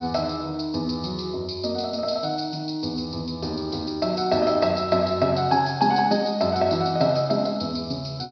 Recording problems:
treble missing; nothing above 5.5 kHz

